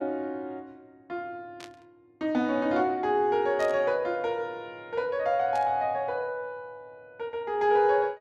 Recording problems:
static burst; at 1.5 s, at 3.5 s and at 5.5 s; peak -12 dB vs average level

